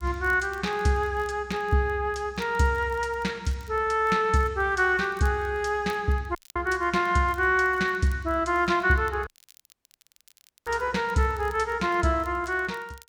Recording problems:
crackle; vinyl, SNR 30 dB
dropout; at 6.5 s and at 9.5 s for 1.5 s

